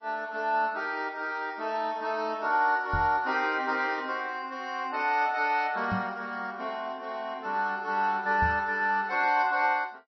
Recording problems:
lossy compression; MP3, log-spectral distance 2 dB, nothing above 5.7 kHz
microphone thump; at 3 s, at 6 s and at 8.5 s; peak 0 dB vs average level

